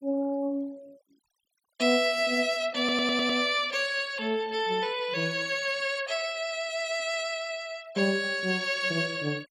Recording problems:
noise reduction artefacts; signal-to-artefact ratio 23 dB
audio stuttering; at 3 s

